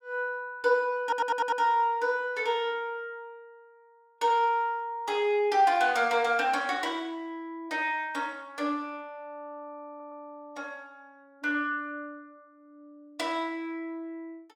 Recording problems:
stutter; at 1 s and at 10 s

